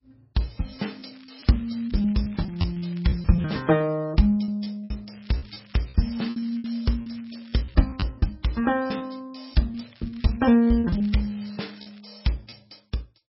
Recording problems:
lossy codec; MP3, log-spectral distance 7 dB, nothing above 5.5 kHz
lost packets; 9% of the sound replaced, filled with repeated pitch periods
crackling; from 1 to 4 s, from 5 to 8 s and from 9.5 to 12 s; loose cable, SNR 26 dB

